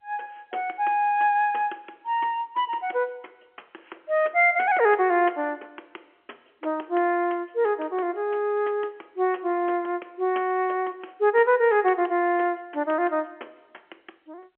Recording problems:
phone line; 300 Hz to 3.3 kHz, G.711

